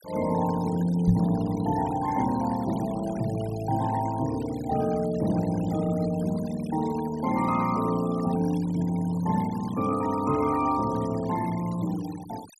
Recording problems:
denoising artefacts; signal-to-artefact ratio 18 dB
microphone thump; at 1 s; peak +6 dB vs average level

